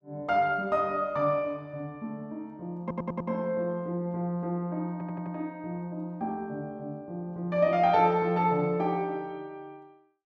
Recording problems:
stutter; at 3 s and at 5 s

